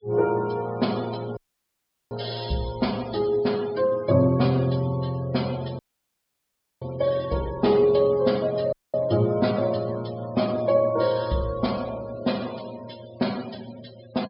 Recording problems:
low-pass filter; nothing above 5.5 kHz
denoising artefacts; signal-to-artefact ratio 20 dB
dropout; at 1.5 s for 0.5 s, at 6 s for 1 s and at 8.5 s

